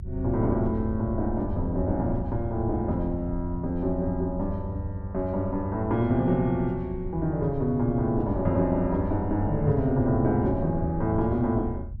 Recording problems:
rumble; below 82 Hz, SNR 9 dB

